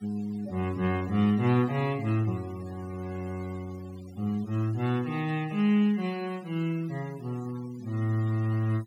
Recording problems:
noise reduction artefacts; signal-to-artefact ratio 21 dB

